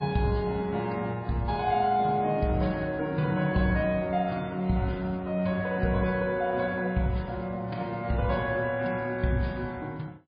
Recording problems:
lossy compression; MP3, log-spectral distance 2 dB, nothing above 4.2 kHz

